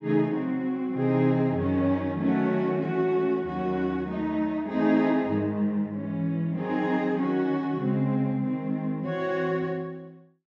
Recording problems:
none

